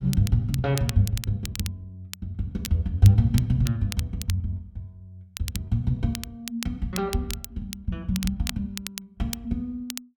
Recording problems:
crackle; vinyl, SNR 12 dB

